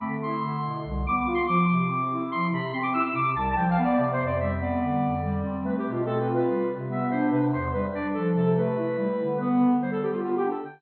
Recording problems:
codec artefacts; MP2, log-spectral distance 2 dB, nothing above 3.6 kHz

